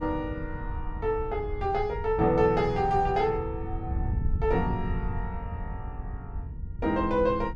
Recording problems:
wind on the microphone; below 98 Hz, SNR 8 dB

